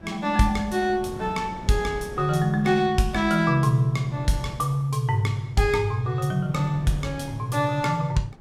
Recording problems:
wind noise; below 410 Hz, SNR 19 dB

